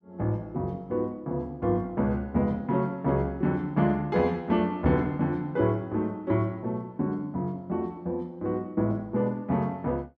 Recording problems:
none

